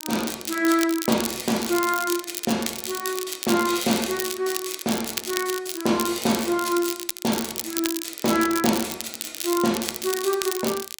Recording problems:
crackle; vinyl, SNR 5 dB

